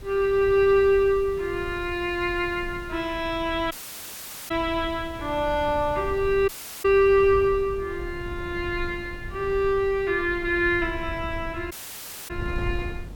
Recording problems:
background hiss; SNR 28 dB
wind on the microphone; below 110 Hz, SNR 14 dB
dropout; at 3.5 s for 1 s, at 6.5 s and at 12 s for 0.5 s

